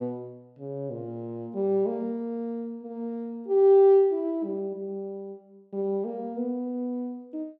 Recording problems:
none

